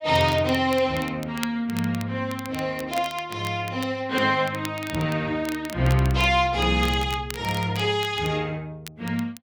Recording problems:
crackle; vinyl, SNR 16 dB

